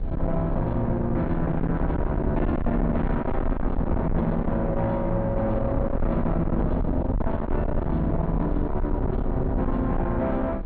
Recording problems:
treble cut off; nothing above 4.5 kHz
distorted audio; soft clipping, signal-to-distortion ratio 7 dB
rumble; below 170 Hz, SNR 4 dB
wind on the microphone; below 540 Hz, SNR 22 dB

